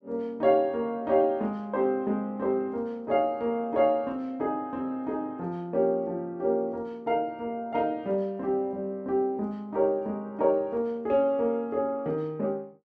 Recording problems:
none

